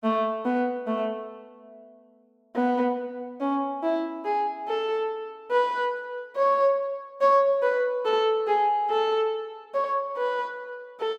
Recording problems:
none

